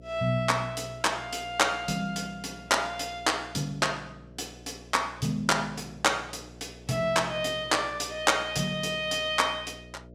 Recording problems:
hum; 60 Hz, harmonics up to 660 Hz, SNR 21 dB

